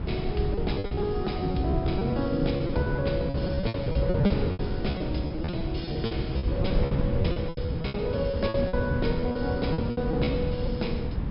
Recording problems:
low-pass filter; nothing above 5.3 kHz
wind noise; below 190 Hz, SNR 2 dB
packet loss; 17% of the sound replaced, filled with repeated pitch periods

